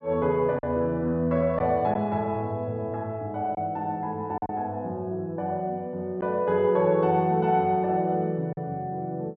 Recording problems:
lost packets; 2% of the sound replaced, filled with silence

